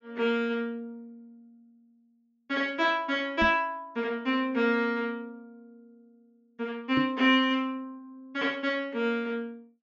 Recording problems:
treble cut off; nothing above 7 kHz
microphone thump; at 3.5 s and at 7 s; peak +1 dB vs average level

